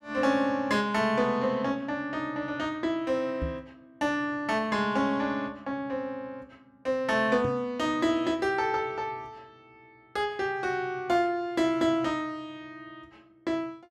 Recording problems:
microphone bump; at 3.5 s and at 7.5 s; peak -1 dB vs average level

